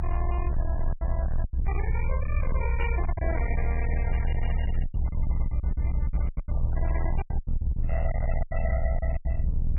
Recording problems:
lossy compression; MP3, log-spectral distance 2 dB, nothing above 2.4 kHz
distorted audio; hard clipping, signal-to-distortion ratio 8 dB
rumble; below 64 Hz, strongest tone 22 Hz, SNR -7 dB
lost packets; 12% of the sound replaced, filled with silence
microphone handling noise; from 4 to 7.5 s; peak -7 dB vs average level

